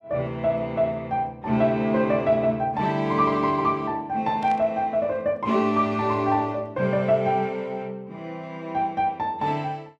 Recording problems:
static burst; at 4.5 s; peak -15 dB vs average level

